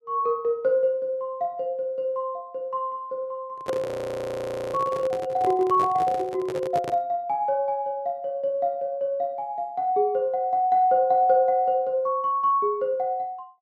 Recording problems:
handling noise; from 3.5 to 7 s; peak -4 dB vs average level
audio freezing; at 4 s for 1 s

